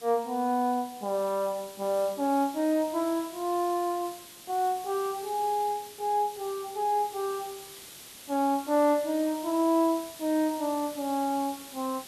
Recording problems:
background hiss; SNR 16 dB

